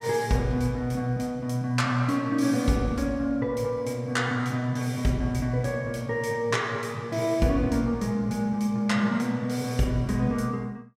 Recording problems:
none

